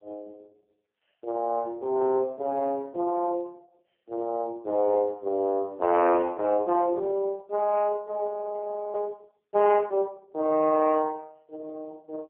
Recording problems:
phone line; 280 Hz to 2.8 kHz, AMR-NB
frozen audio; at 8.5 s for 0.5 s

